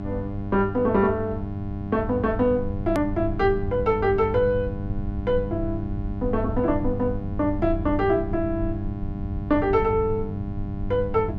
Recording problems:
hum; 50 Hz, harmonics up to 1.1 kHz, SNR 8 dB
low-frequency rumble; below 110 Hz, SNR 10 dB
edit click; at 3 s

